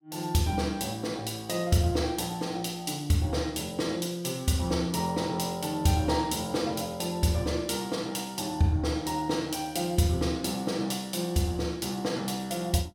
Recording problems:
none

